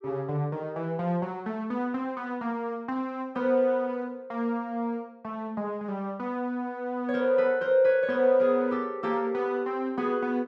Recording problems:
none

